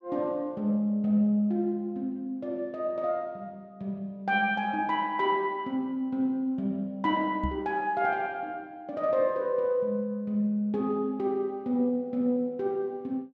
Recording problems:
knock on the microphone; at 7.5 s; peak 0 dB vs average level

